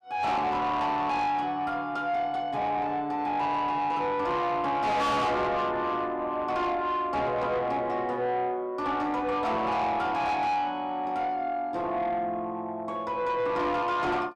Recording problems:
distortion; soft clipping, signal-to-distortion ratio 7 dB

